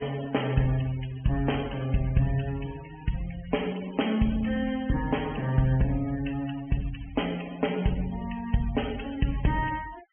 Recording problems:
treble missing; nothing above 3.2 kHz
denoising artefacts; signal-to-artefact ratio 17 dB

